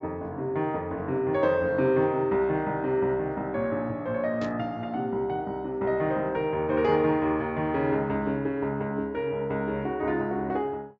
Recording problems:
low-pass filter; nothing above 8 kHz
static burst; at 4.5 s; peak -12 dB vs average level

